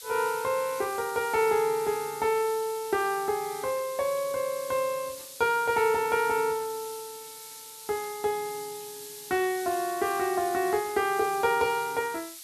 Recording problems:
hiss; slope +6 dB per octave, SNR 13 dB

